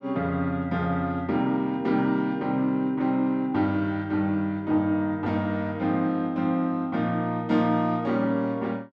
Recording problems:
none

